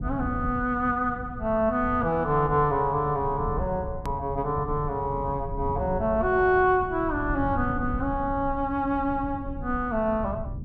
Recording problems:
rumble; below 140 Hz, SNR 10 dB
click at an edit; at 4 s

